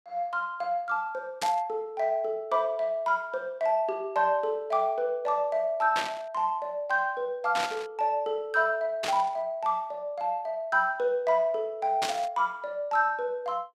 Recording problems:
burst of static; 5 times, first at 1.5 s; peak +1 dB vs average level

